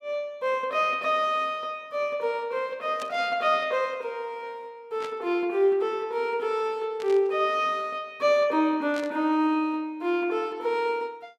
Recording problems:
burst of static; 4 times, first at 3 s; peak -9 dB vs average level

